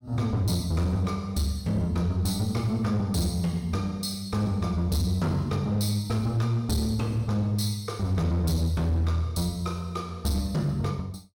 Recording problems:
distortion; hard clipping, uneven, signal-to-distortion ratio 10 dB

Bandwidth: 17 kHz